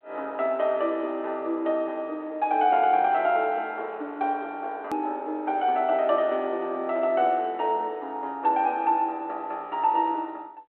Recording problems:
phone line; 280 Hz to 3.3 kHz, G.726
hard cut with a click; at 5 s

